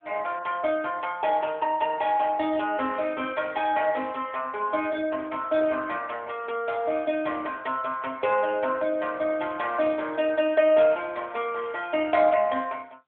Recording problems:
phone line; 320 Hz to 3.4 kHz, AMR-NB

